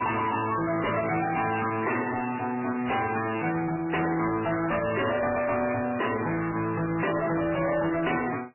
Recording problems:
codec artefacts; MP3, log-spectral distance 10 dB, nothing above 2.7 kHz
distorted audio; soft clipping, signal-to-distortion ratio 5 dB

